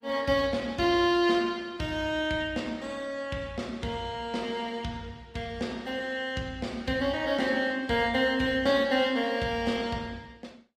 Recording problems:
lossy compression; Opus, log-spectral distance 3 dB, nothing above 18.3 kHz

